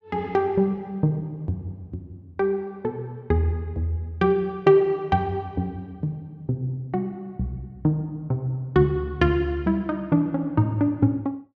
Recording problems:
none

